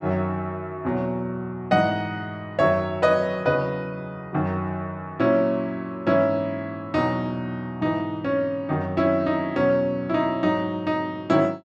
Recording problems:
none

